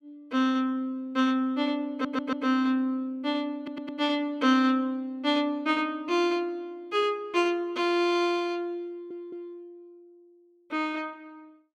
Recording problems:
stutter; at 2 s, at 3.5 s and at 9 s

